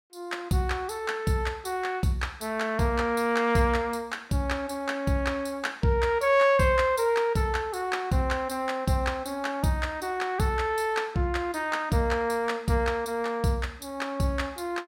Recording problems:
none

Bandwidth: 16 kHz